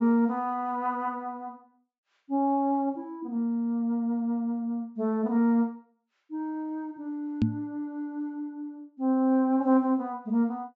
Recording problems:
treble missing; nothing above 8 kHz
microphone thump; at 7.5 s; peak +7 dB vs average level

